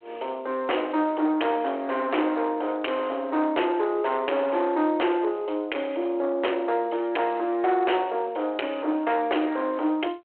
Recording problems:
telephone audio; 280 Hz to 3.2 kHz, G.726
distorted audio; soft clipping, signal-to-distortion ratio 8 dB

